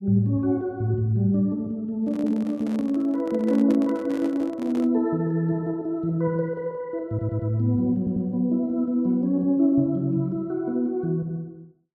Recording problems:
microphone handling noise; from 2 to 5 s; peak -7 dB vs average level
stutter; at 7 s and at 8 s

